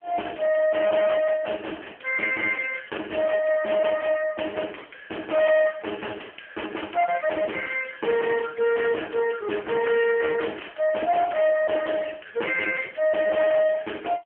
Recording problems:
phone line; 260 Hz to 3.2 kHz, AMR-NB
distorted audio; hard clipping, signal-to-distortion ratio 10 dB

